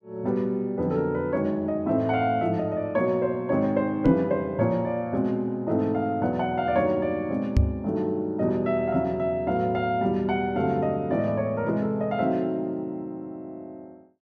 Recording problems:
knock on the microphone; at 4 s and at 7.5 s; peak +8 dB vs average level

